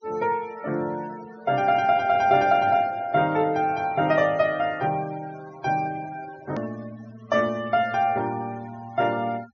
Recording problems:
treble cut off; nothing above 6.7 kHz
denoising artefacts; signal-to-artefact ratio 22 dB
click at an edit; at 6.5 s

